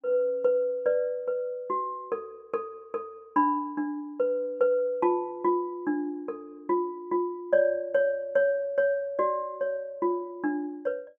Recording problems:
none

